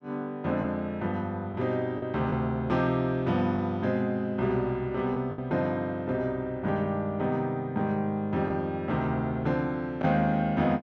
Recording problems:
lost packets; 2% of the sound replaced, filled with the last packet

